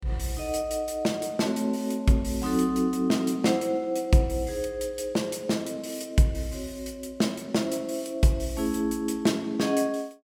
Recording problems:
none

